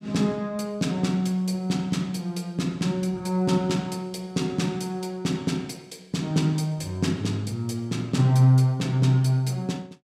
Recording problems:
none

